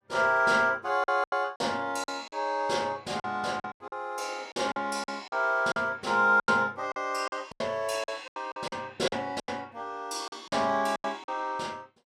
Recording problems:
packet loss; 12% of the sound replaced, filled with silence

